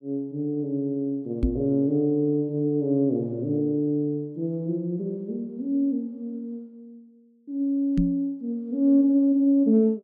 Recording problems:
microphone bump; at 1.5 s and at 8 s; peak +4 dB vs average level

